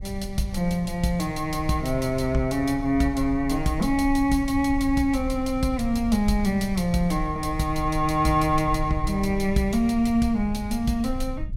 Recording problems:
wind noise; below 72 Hz, SNR 11 dB

